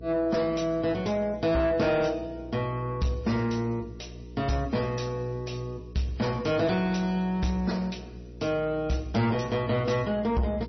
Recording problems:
codec artefacts; MP3, log-spectral distance 3 dB, nothing above 5.8 kHz
distorted audio; soft clipping, signal-to-distortion ratio 11 dB
hum; 60 Hz, harmonics up to 480 Hz, SNR 16 dB

